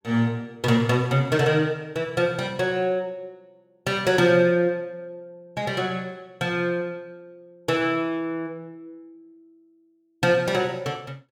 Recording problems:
none

